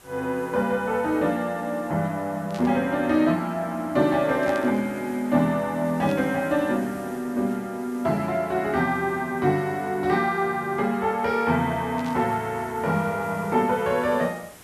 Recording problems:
background hiss; slope -3 dB per octave, SNR 23 dB
static burst; 4 times, first at 2.5 s; peak -12 dB vs average level

